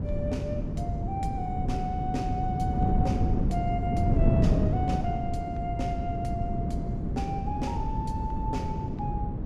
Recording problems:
wind noise; below 200 Hz, SNR -4 dB

